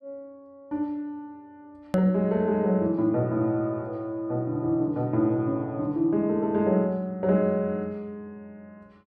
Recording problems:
click at an edit; at 2 s

